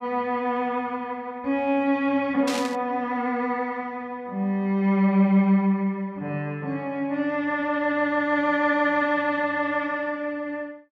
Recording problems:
burst of static; at 2.5 s; peak -3 dB vs average level

